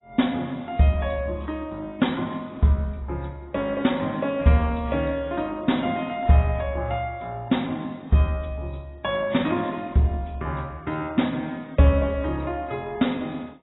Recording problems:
codec artefacts; AAC, log-spectral distance 4 dB, nothing above 3.8 kHz

